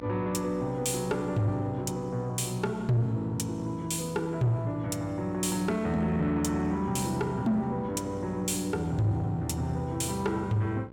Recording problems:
distorted audio; soft clipping, signal-to-distortion ratio 10 dB
hum; 60 Hz, harmonics up to 2 kHz, SNR 17 dB

